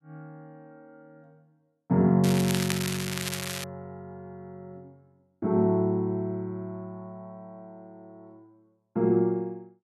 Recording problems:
crackle; from 2 to 3.5 s; loose cable, SNR 6 dB

